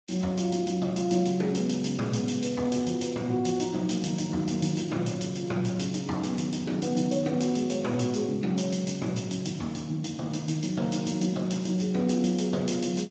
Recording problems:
lossy codec; Vorbis, then Speex, log-spectral distance 6 dB, nothing above 7.3 kHz

